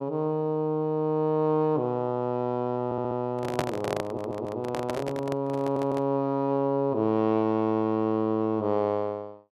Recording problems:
audio stuttering; at 3 s, at 4 s and at 5.5 s
handling noise; from 3.5 to 6 s; peak +4 dB vs average level

